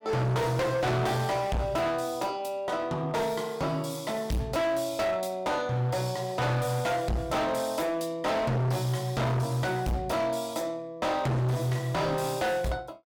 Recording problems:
distortion; hard clipping, signal-to-distortion ratio 6 dB

